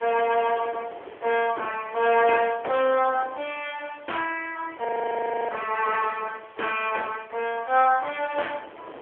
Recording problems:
telephone audio; 370 Hz to 3.3 kHz, AMR-NB
background hiss; SNR 27 dB
wind noise; below 850 Hz, SNR 20 dB
frozen audio; at 5 s for 0.5 s

